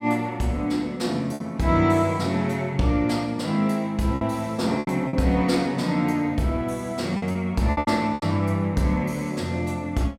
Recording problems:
lost packets; 5% of the sound replaced, filled with repeated pitch periods

